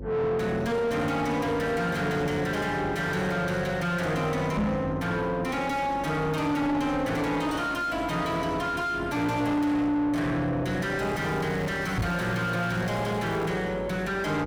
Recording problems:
distortion; soft clipping, signal-to-distortion ratio 5 dB
hum; 50 Hz, harmonics up to 550 Hz, SNR 15 dB
microphone bump; at 4.5 s and at 12 s; peak +5 dB vs average level
crackle; from 11 to 14 s; loose cable, SNR 15 dB

